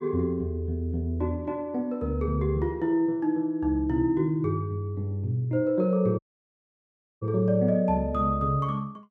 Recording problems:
dropout; at 6 s for 1 s

